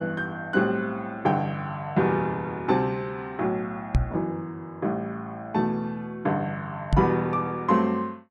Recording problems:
microphone bump; at 4 s and at 7 s; peak +8 dB vs average level

